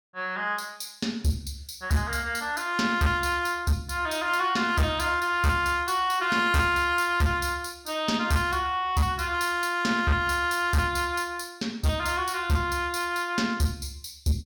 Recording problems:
distorted audio; hard clipping, uneven, signal-to-distortion ratio 11 dB

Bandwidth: 18 kHz